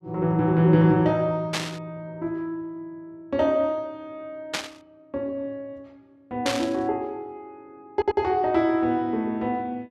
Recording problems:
burst of static; at 1.5 s, at 4.5 s and at 6.5 s; peak +2 dB vs average level
stutter; at 8 s

